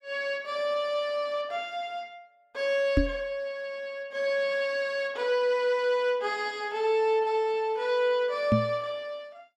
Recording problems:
knock on the microphone; at 3 s and at 8.5 s; peak +7 dB vs average level

